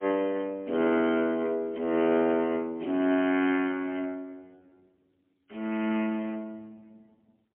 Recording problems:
phone line; 240 Hz to 3.1 kHz, AMR-NB, then MP3

